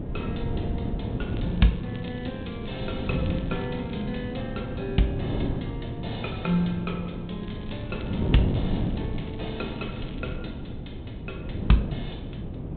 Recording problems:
treble cut off; nothing above 4 kHz
wind on the microphone; below 260 Hz, SNR 2 dB
crackle; from 1.5 to 4 s and from 7.5 to 10 s; loose cable, SNR 20 dB

